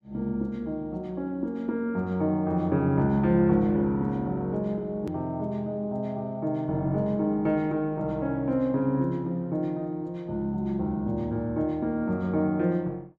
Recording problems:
hard cut with a click; at 5 s

